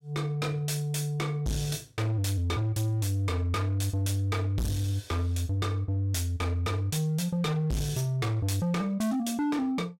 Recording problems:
distorted audio; hard clipping, signal-to-distortion ratio 7 dB

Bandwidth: 16 kHz